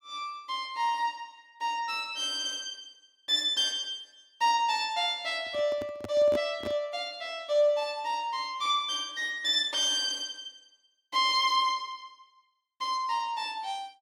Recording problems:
microphone handling noise; from 5.5 to 7 s; peak -3 dB vs average level

